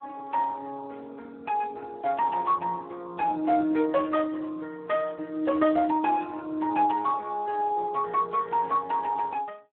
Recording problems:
telephone audio; 240 Hz to 2.8 kHz, Speex

